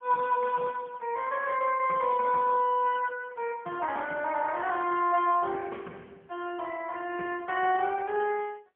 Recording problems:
telephone audio; 300 Hz to 3 kHz, AMR-NB, then MP3

